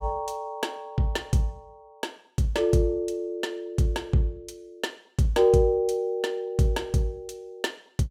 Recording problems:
none

